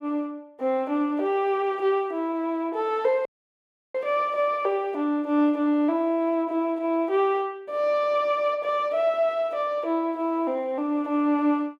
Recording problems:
audio cutting out; at 3.5 s for 0.5 s

